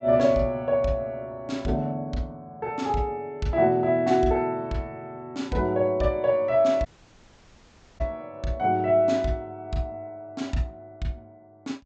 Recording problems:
low-pass filter; nothing above 8 kHz
audio cutting out; at 7 s for 1 s

